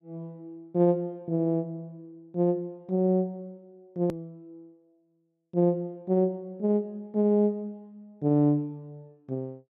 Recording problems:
hard cut with a click; at 4 s

